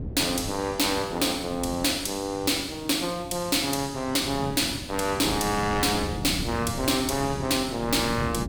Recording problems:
distorted audio; hard clipping, signal-to-distortion ratio 11 dB
wind on the microphone; below 250 Hz, SNR 11 dB

